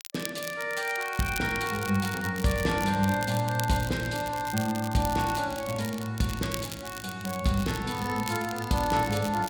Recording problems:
crackling; vinyl, SNR 12 dB

